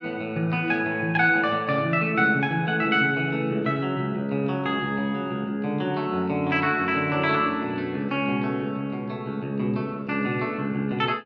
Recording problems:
none

